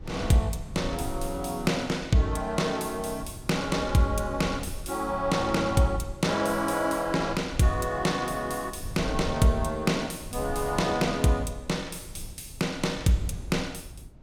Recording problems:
low-frequency rumble; below 100 Hz, SNR 14 dB

